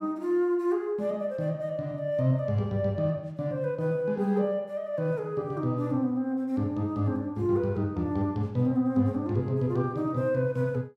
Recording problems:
none

